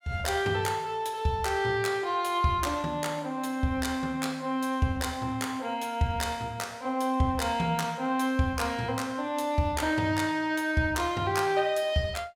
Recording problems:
none

